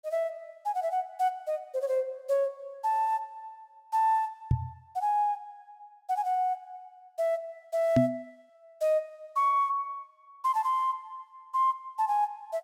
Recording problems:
knock on the microphone; at 4.5 s and at 8 s; peak +8 dB vs average level

